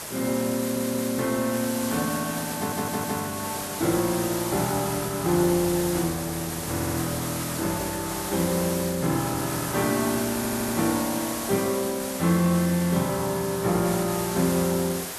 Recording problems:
background hiss; slope -3 dB per octave, SNR 6 dB
stutter; 4 times, first at 0.5 s
crackle; from 1.5 to 4 s, from 7.5 to 9 s and from 12 to 15 s; loose cable, SNR 27 dB

